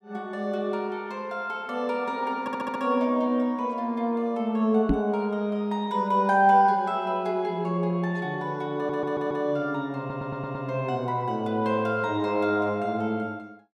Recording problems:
stutter; at 2.5 s, at 9 s and at 10 s
knock on the microphone; at 5 s; peak +6 dB vs average level

